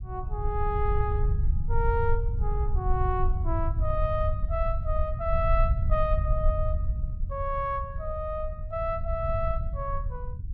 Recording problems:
rumble; below 74 Hz, SNR -1 dB

